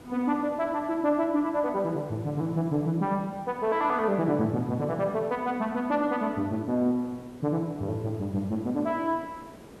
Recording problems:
background hiss; slope -7 dB per octave, SNR 21 dB

